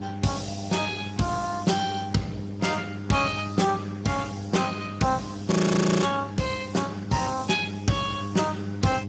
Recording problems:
lossy compression; Speex, log-spectral distance 6 dB, nothing above 7.6 kHz
hum; 50 Hz, harmonics up to 800 Hz, SNR 9 dB
background hiss; SNR 23 dB
frozen audio; at 5.5 s for 0.5 s

